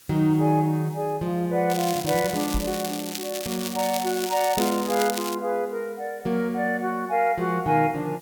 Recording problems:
hiss; SNR 25 dB
crackle; from 1.5 to 5.5 s; loose cable, SNR 7 dB
microphone bump; at 2.5 s; peak -1 dB vs average level

